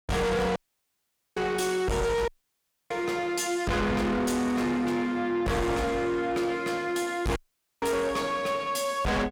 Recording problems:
distortion; soft clipping, signal-to-distortion ratio 6 dB
audio cutting out; at 0.5 s for 1 s, at 2.5 s for 0.5 s and at 7.5 s

